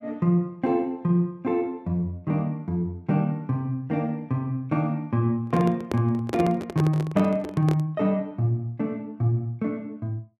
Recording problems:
microphone handling noise; from 5.5 to 8 s; peak +1 dB vs average level

